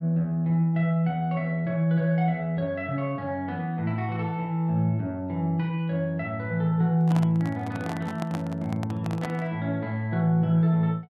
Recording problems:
microphone handling noise; from 7 to 9.5 s; peak -4 dB vs average level

